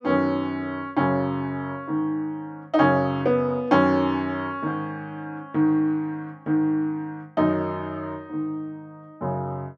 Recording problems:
none

